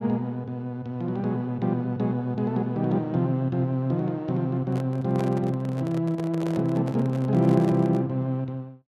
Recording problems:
handling noise; from 4.5 to 8 s; peak -6 dB vs average level

